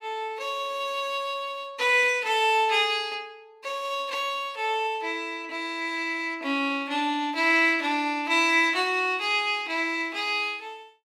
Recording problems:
none

